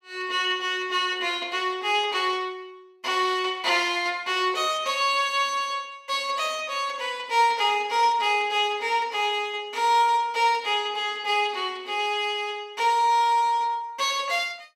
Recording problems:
none

